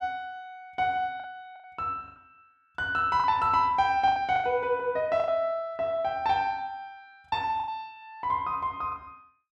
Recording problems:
packet loss; 7% of the sound replaced, filled with the last packet

